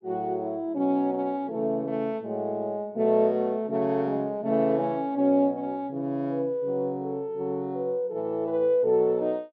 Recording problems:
none

